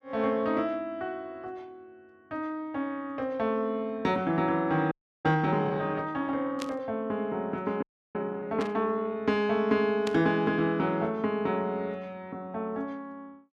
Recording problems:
frozen audio; at 5 s and at 8 s
static burst; at 6.5 s, at 8.5 s and at 10 s; peak -3 dB vs average level

